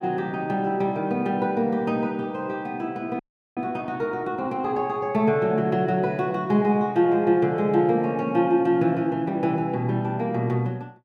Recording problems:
audio freezing; at 3 s

